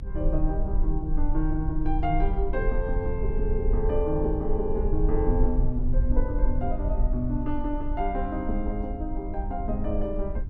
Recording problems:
rumble; below 50 Hz, SNR 0 dB

